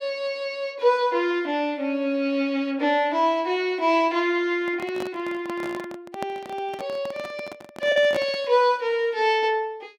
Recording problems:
lost packets; 0.4% of the sound replaced, filled with the last packet
handling noise; from 4.5 to 8.5 s; peak -3 dB vs average level

